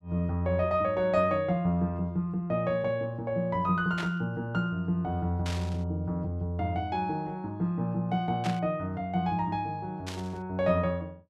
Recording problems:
static burst; 4 times, first at 4 s; peak -4 dB vs average level

